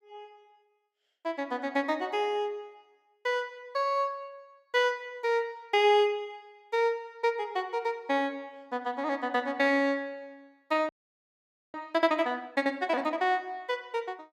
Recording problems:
frozen audio; at 11 s for 1 s

